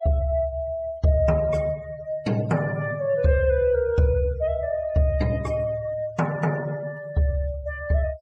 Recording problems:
denoising artefacts; signal-to-artefact ratio 24 dB

